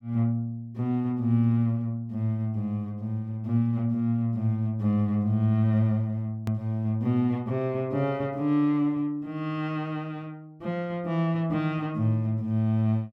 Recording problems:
edit click; at 6.5 s

